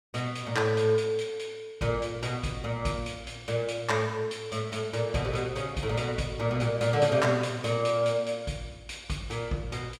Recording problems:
none

